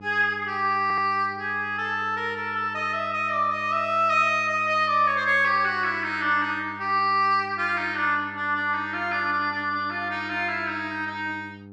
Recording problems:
mains hum; 50 Hz, harmonics up to 900 Hz, SNR 20 dB
stutter; at 1 s

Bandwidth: 12.5 kHz